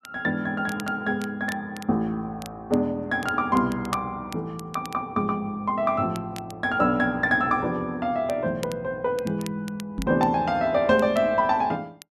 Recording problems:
crackle; vinyl, SNR 20 dB
knock on the microphone; at 10 s; peak -2 dB vs average level

